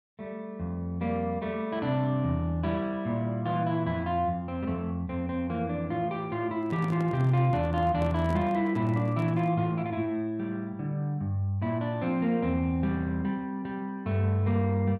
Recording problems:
handling noise; from 6.5 to 9.5 s; peak -5 dB vs average level

